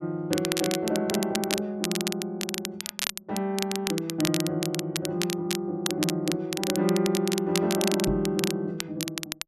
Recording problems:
crackle; vinyl, SNR 4 dB
microphone thump; at 8 s; peak 0 dB vs average level

